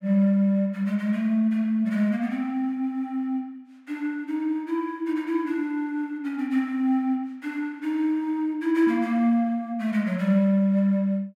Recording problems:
none

